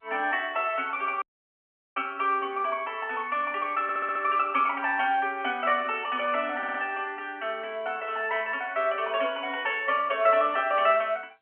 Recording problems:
phone line; 240 Hz to 3.3 kHz, G.711
audio cutting out; at 1 s for 0.5 s
stutter; at 4 s and at 6.5 s

